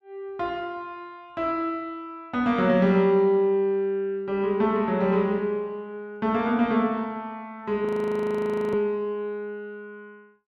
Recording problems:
audio freezing; at 8 s for 1 s

